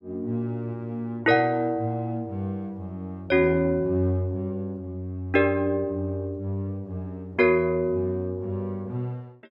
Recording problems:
none

